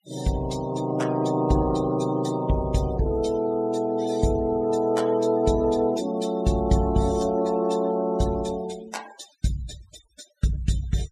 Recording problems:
noise reduction artefacts; signal-to-artefact ratio 20 dB

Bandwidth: 14.5 kHz